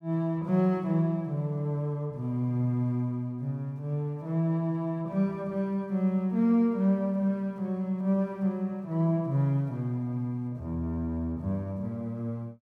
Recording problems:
none

